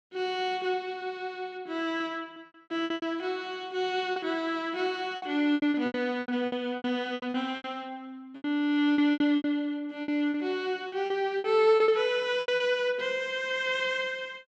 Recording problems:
packet loss; 12% of the sound replaced, filled with repeated pitch periods

